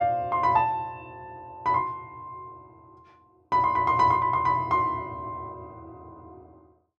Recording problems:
none

